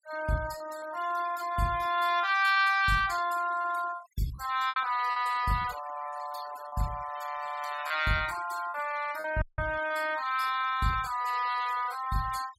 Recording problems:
denoising artefacts; signal-to-artefact ratio 17 dB
packet loss; 6% of the sound replaced, filled with repeated pitch periods
dropout; at 9.5 s

